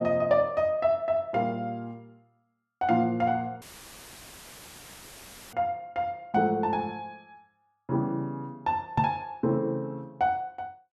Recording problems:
dropout; at 3.5 s for 2 s; filled with static
microphone bump; at 9 s; peak +3 dB vs average level

